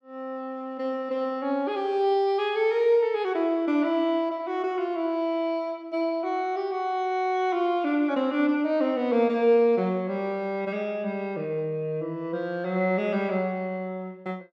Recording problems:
none

